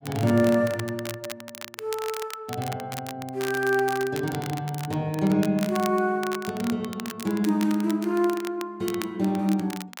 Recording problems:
crackle; vinyl, SNR 13 dB

